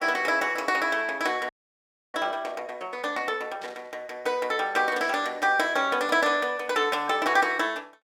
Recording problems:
audio freezing; at 1.5 s for 0.5 s
static burst; at 2.5 s, at 3.5 s and at 5 s; peak -14 dB vs average level

